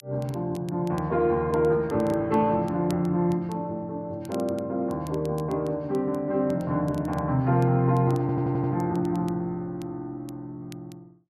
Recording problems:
crackling; vinyl, SNR 27 dB
audio stuttering; at 8 s

